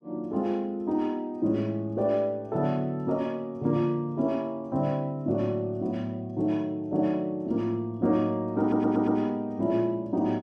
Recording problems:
stutter; at 8.5 s

